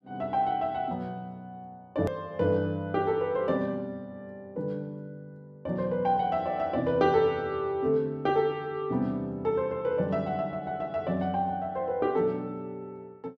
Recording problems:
edit click; at 2 s

